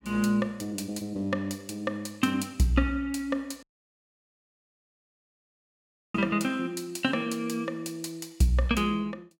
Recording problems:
dropout; at 3.5 s for 2.5 s

